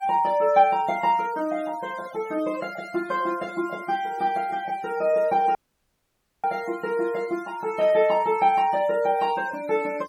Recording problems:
noise reduction artefacts; signal-to-artefact ratio 23 dB
audio cutting out; at 5.5 s for 1 s
static burst; at 8 s; peak -16 dB vs average level

